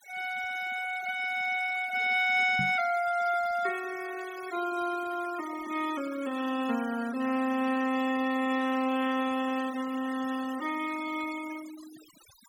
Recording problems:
noise reduction artefacts; signal-to-artefact ratio 16 dB
microphone thump; at 2.5 s; peak -1 dB vs average level

